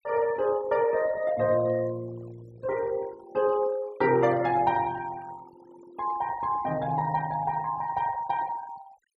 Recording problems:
denoising artefacts; signal-to-artefact ratio 21 dB

